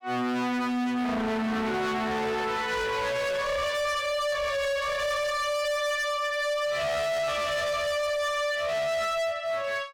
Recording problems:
distorted audio; hard clipping, signal-to-distortion ratio 6 dB

